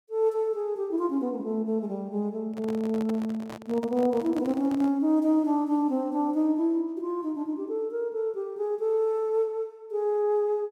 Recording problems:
microphone handling noise; from 2.5 to 5 s; peak -8 dB vs average level

